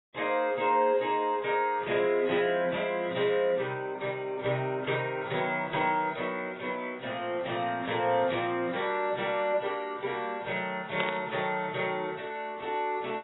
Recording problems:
lossy compression; AAC, then AAC, log-spectral distance 4 dB, nothing above 3.8 kHz
burst of static; at 11 s; peak -1 dB vs average level

